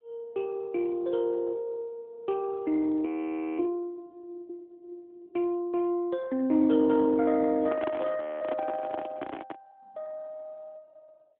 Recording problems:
phone line; 150 Hz to 3.4 kHz, AMR-NB
audio freezing; at 3 s for 0.5 s and at 8 s
handling noise; from 7.5 to 9.5 s; peak -1 dB vs average level

